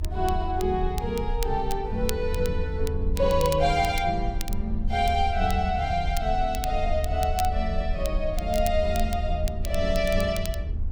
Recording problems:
rumble; below 76 Hz, SNR 5 dB
crackling; vinyl, SNR 15 dB

